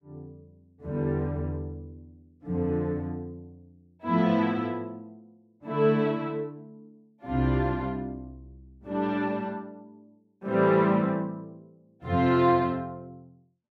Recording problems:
none

